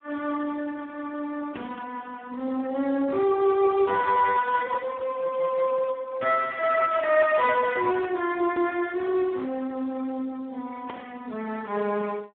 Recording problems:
phone line; 260 Hz to 2.5 kHz, Speex

